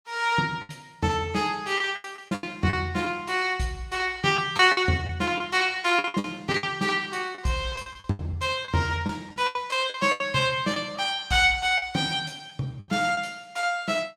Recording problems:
lost packets; 10% of the sound replaced, filled with the last packet

